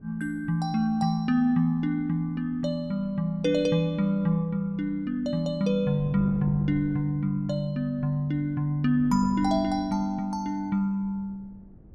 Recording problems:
wind on the microphone; below 240 Hz, SNR 20 dB

